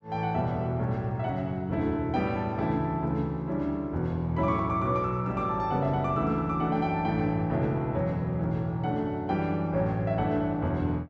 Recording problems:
none

